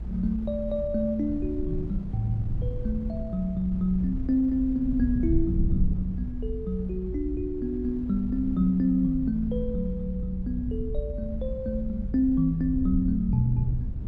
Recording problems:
rumble; below 90 Hz, SNR 6 dB
wind on the microphone; below 220 Hz, SNR 21 dB

